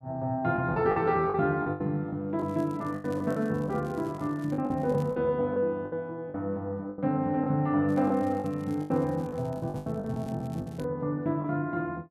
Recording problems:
lost packets; 11% of the sound replaced, filled with the last packet
crackling; from 2.5 to 5 s and from 8 to 11 s; loose cable, SNR 28 dB

